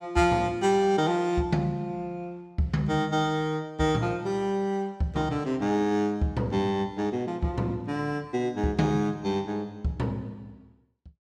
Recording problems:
none

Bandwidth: 16.5 kHz